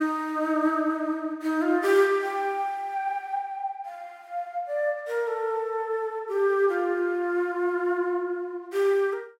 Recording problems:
none

